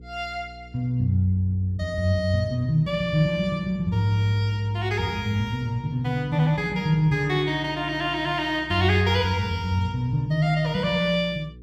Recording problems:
hum; 60 Hz, harmonics up to 480 Hz, SNR 20 dB

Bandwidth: 16 kHz